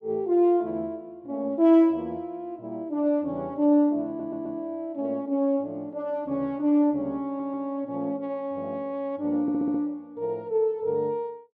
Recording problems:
stutter; at 4 s, at 7.5 s and at 9.5 s

